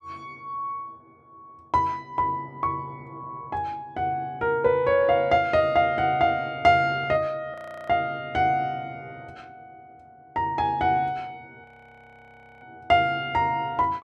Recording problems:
audio freezing; at 7.5 s and at 12 s for 1 s

